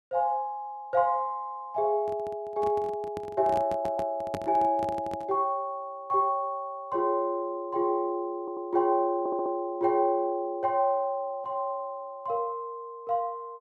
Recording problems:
microphone handling noise; from 2 to 5.5 s; peak -2 dB vs average level
stutter; at 3.5 s, at 8.5 s and at 9 s

